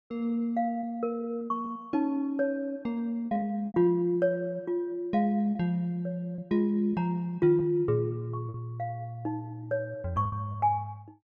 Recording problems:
packet loss; 5% of the sound replaced, filled with repeated pitch periods

